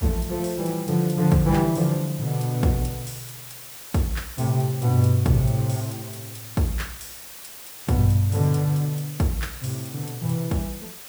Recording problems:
background hiss; slope 0 dB per octave, SNR 14 dB

